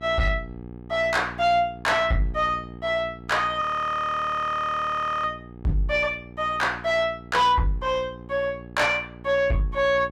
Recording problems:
distortion; soft clipping, signal-to-distortion ratio 11 dB
hum; 60 Hz, harmonics up to 900 Hz, SNR 18 dB
audio freezing; at 3.5 s for 1.5 s

